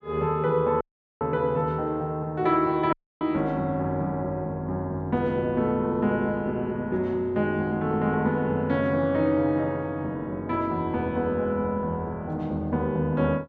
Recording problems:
audio cutting out; at 1 s and at 3 s

